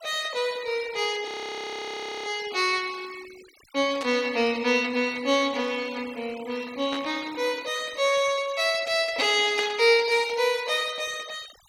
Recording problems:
noise reduction artefacts; signal-to-artefact ratio 19 dB
audio freezing; at 1.5 s for 1 s
static burst; at 4 s, at 7 s and at 9.5 s; peak -5 dB vs average level

